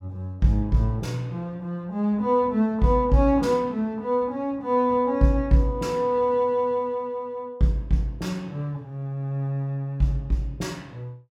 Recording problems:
none

